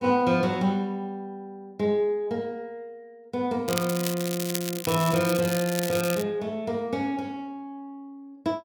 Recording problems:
crackle; from 3.5 to 6 s; loose cable, SNR 6 dB

